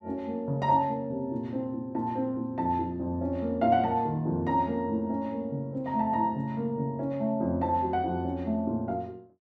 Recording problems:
none

